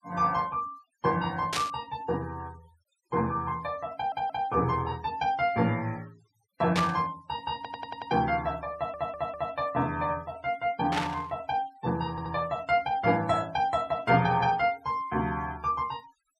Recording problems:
noise reduction artefacts; signal-to-artefact ratio 25 dB
static burst; at 1.5 s, at 7 s and at 11 s; peak +3 dB vs average level
audio stuttering; 4 times, first at 4 s

